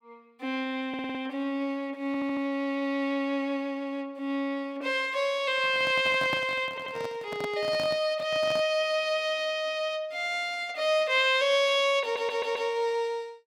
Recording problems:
audio stuttering; 4 times, first at 1 s
handling noise; from 5.5 to 8.5 s; peak -3 dB vs average level

